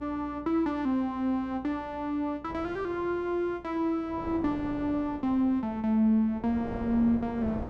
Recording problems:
electrical hum; 60 Hz, harmonics up to 420 Hz, SNR 24 dB
wind noise; below 540 Hz, SNR 14 dB

